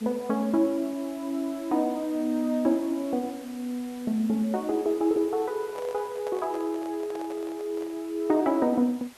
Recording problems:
hiss; slope -2 dB per octave, SNR 21 dB
handling noise; from 5.5 to 8 s; peak -8 dB vs average level

